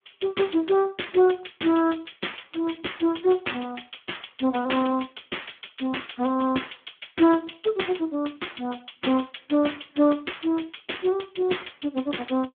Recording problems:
telephone audio; 220 Hz to 3.5 kHz, Speex

